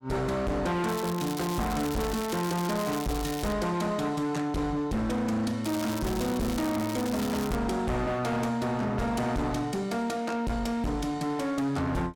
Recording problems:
distortion; hard clipping, signal-to-distortion ratio 7 dB
crackle; from 1 to 3.5 s and from 5.5 to 7.5 s; loose cable, SNR 10 dB

